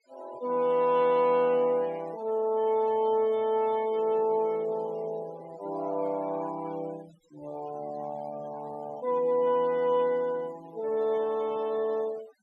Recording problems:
noise reduction artefacts; signal-to-artefact ratio 22 dB

